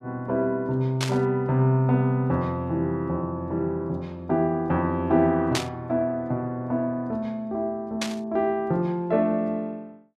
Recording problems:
burst of static; at 1 s, at 5.5 s and at 8 s; peak +3 dB vs average level

